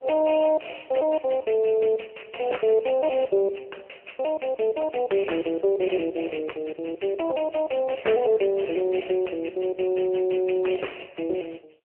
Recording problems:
phone line; 320 Hz to 3.1 kHz, AMR-NB

